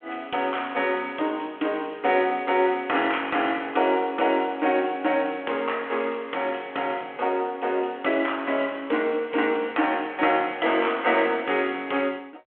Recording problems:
phone line; 240 Hz to 3.3 kHz, G.726

